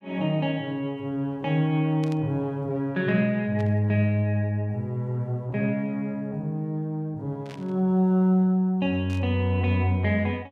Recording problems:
burst of static; 4 times, first at 2 s; peak -14 dB vs average level

